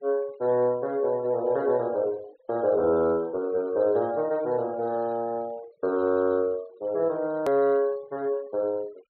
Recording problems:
treble missing; nothing above 4.3 kHz
noise reduction artefacts; signal-to-artefact ratio 26 dB
edit click; at 7.5 s

